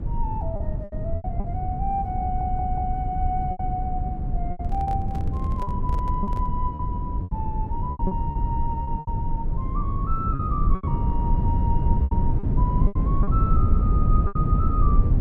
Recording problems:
rumble; below 110 Hz, SNR -6 dB
lost packets; 9% of the sound replaced, filled with repeated pitch periods
stutter; at 2 s
microphone handling noise; from 4.5 to 6.5 s; peak -5 dB vs average level

